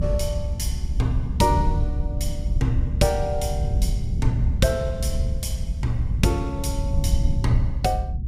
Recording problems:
low-frequency rumble; below 88 Hz, SNR -1 dB

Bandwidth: 15.5 kHz